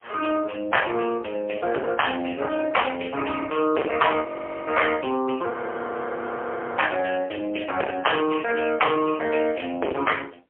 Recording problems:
telephone audio; 280 Hz to 3.2 kHz, AMR-NB, then MP3
distortion; hard clipping, signal-to-distortion ratio 10 dB
audio freezing; at 4.5 s and at 5.5 s for 1.5 s

